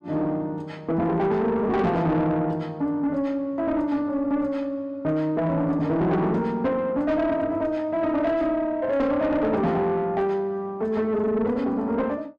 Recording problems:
distortion; soft clipping, signal-to-distortion ratio 10 dB

